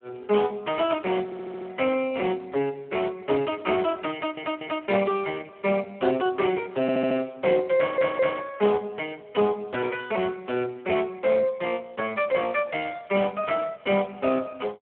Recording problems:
phone line; 170 Hz to 3.4 kHz, Speex
audio stuttering; 4 times, first at 1.5 s

